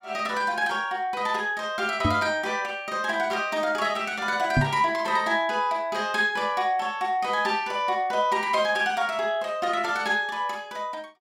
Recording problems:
microphone bump; at 2 s and at 4.5 s; peak +6 dB vs average level

